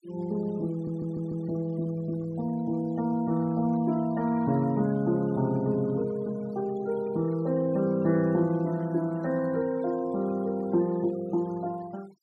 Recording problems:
noise reduction artefacts; signal-to-artefact ratio 23 dB
stutter; at 0.5 s

